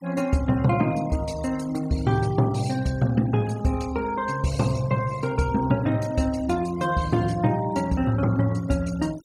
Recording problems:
noise reduction artefacts; signal-to-artefact ratio 20 dB

